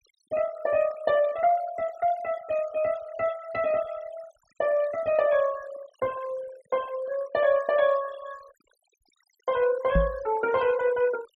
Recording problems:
noise reduction artefacts; signal-to-artefact ratio 20 dB
knock on the microphone; at 10 s; peak +5 dB vs average level

